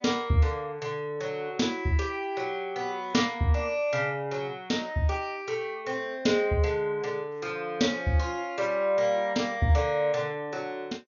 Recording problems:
lossy compression; MP2, log-spectral distance 2 dB, nothing above 6.7 kHz

